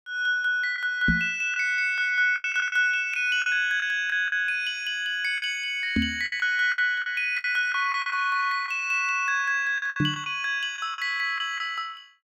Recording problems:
lost packets; 8% of the sound replaced, filled with the last packet
knock on the microphone; at 1 s, at 6 s and at 10 s; peak +3 dB vs average level

